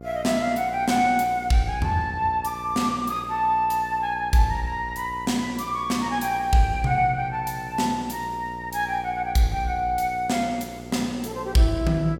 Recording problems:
hum; 60 Hz, harmonics up to 1.3 kHz, SNR 16 dB

